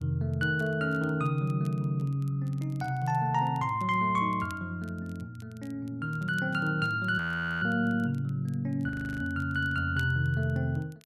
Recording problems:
crackling; vinyl, SNR 30 dB
frozen audio; at 7 s and at 9 s

